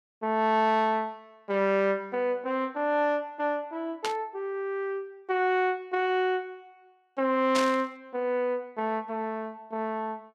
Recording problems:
static burst; at 4 s and at 7.5 s; peak +1 dB vs average level

